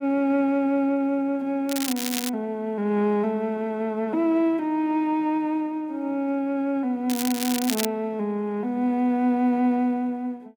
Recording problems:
crackling; at 1.5 s and at 7 s; loose cable, SNR 5 dB

